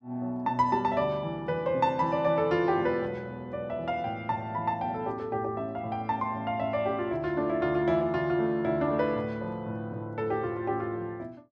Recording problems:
none

